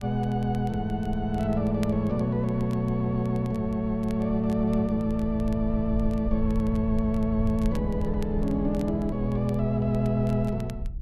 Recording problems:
rumble; below 78 Hz, SNR 10 dB
crackle; vinyl, SNR 27 dB

